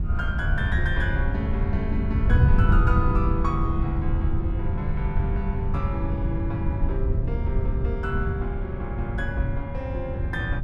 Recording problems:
wind noise; below 100 Hz, SNR -5 dB

